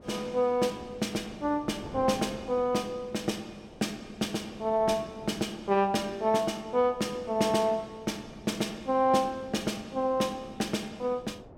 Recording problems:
wind on the microphone; below 550 Hz, SNR 19 dB

